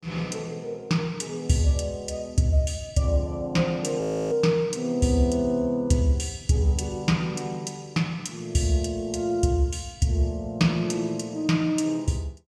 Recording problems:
audio freezing; at 4 s

